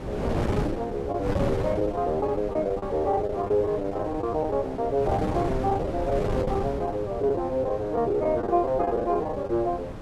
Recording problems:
wind noise; below 460 Hz, SNR 7 dB
packet loss; 11% of the sound replaced, filled with the last packet

